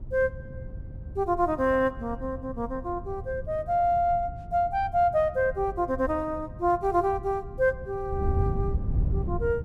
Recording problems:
wind on the microphone; below 120 Hz, SNR 9 dB

